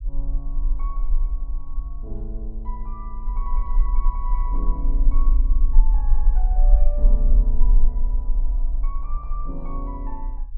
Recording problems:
rumble; below 38 Hz, strongest tone 20 Hz, SNR -14 dB

